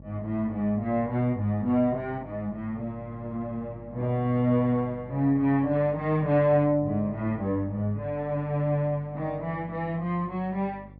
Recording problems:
low-pass filter; nothing above 5.5 kHz
electrical hum; 50 Hz, harmonics up to 800 Hz, SNR 19 dB

